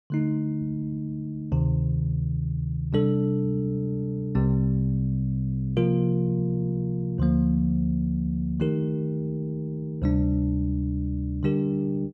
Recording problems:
none

